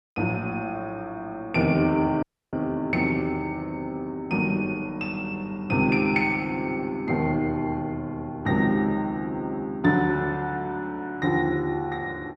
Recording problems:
dropout; at 2 s

